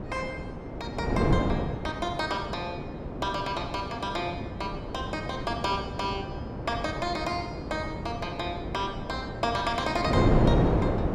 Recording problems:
wind noise; below 480 Hz, SNR -1 dB

